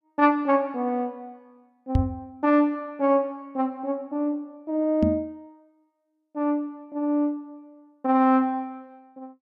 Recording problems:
knock on the microphone; at 2 s and at 5 s; peak +6 dB vs average level

